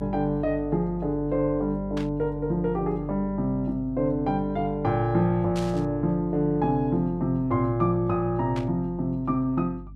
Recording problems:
electrical hum; 50 Hz, harmonics up to 300 Hz, SNR 16 dB
burst of static; at 2 s, at 5.5 s and at 8.5 s; peak -8 dB vs average level

